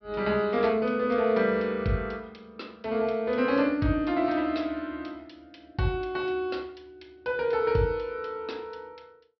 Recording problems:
treble cut off; nothing above 5.5 kHz

